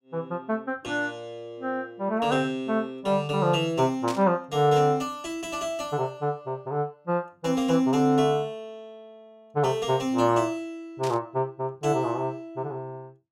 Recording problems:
static burst; at 4 s and at 11 s; peak -6 dB vs average level

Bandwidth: 16 kHz